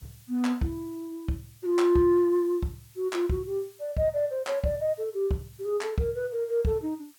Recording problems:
hiss; slope +2 dB per octave, SNR 27 dB

